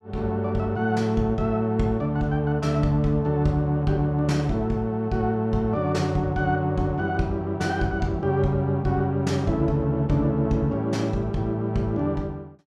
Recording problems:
none

